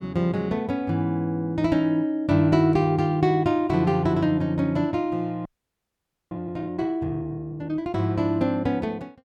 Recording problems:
frozen audio; at 5.5 s for 1 s

